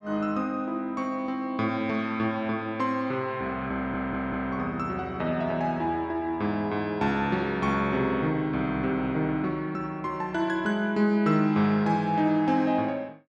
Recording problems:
stutter; at 4 s

